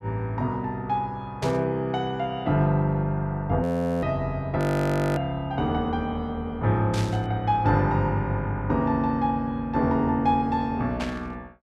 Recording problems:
static burst; at 1.5 s, at 7 s and at 11 s; peak -5 dB vs average level
frozen audio; at 3.5 s and at 4.5 s for 0.5 s

